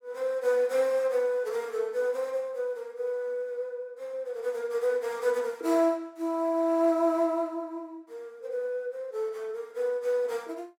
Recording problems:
none

